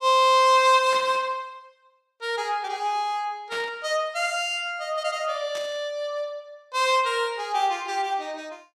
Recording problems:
burst of static; at 1 s, at 3.5 s and at 5.5 s; peak -9 dB vs average level

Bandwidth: 15 kHz